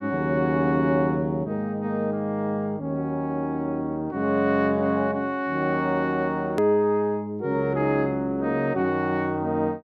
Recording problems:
edit click; at 6.5 s

